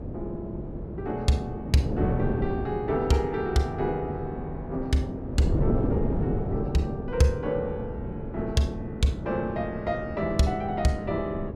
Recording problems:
wind noise; below 330 Hz, SNR 4 dB

